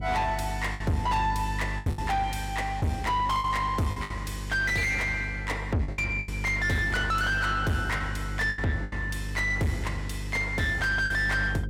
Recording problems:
distortion; soft clipping, signal-to-distortion ratio 6 dB
hum; 50 Hz, harmonics up to 550 Hz, SNR 7 dB
lost packets; 7% of the sound replaced, filled with the last packet

